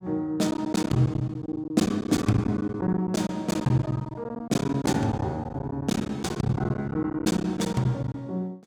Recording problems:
lost packets; 16% of the sound replaced, filled with silence

